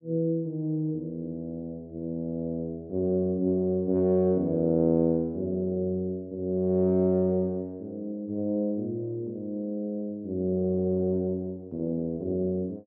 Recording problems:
none

